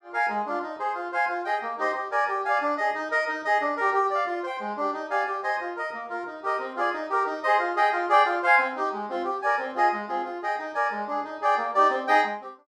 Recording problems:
none

